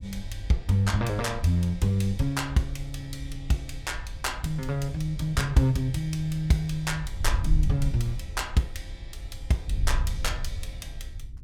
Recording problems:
wind noise; below 64 Hz, SNR 8 dB

